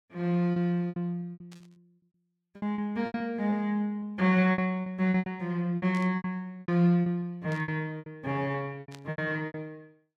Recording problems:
packet loss; 16% of the sound replaced, filled with repeated pitch periods
burst of static; 4 times, first at 1.5 s; peak -14 dB vs average level

